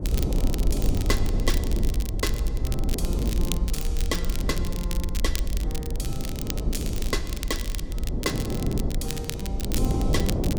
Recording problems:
rumble; below 56 Hz, SNR -3 dB
wind noise; below 340 Hz, SNR -2 dB
crackling; vinyl, SNR 4 dB

